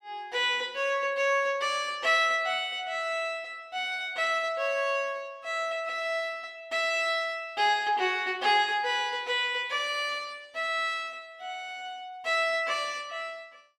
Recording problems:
none

